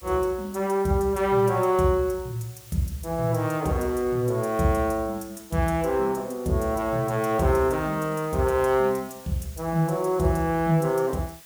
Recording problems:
background hiss; slope +1 dB per octave, SNR 22 dB

